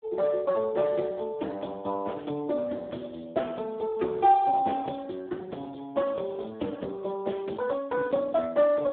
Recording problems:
phone line; 220 Hz to 3.5 kHz, Speex

